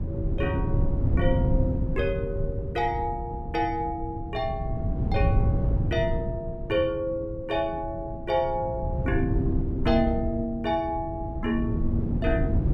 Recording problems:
wind noise; below 150 Hz, SNR 0 dB

